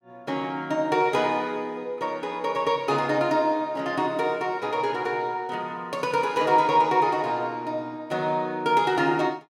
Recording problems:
none

